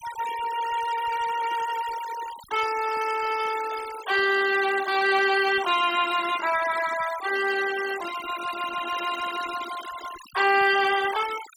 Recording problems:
noise reduction artefacts; signal-to-artefact ratio 13 dB

